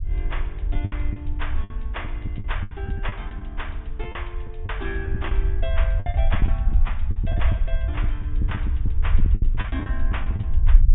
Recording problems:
treble cut off; nothing above 3.7 kHz
rumble; below 66 Hz, SNR -9 dB
packet loss; 11% of the sound replaced, filled with the last packet

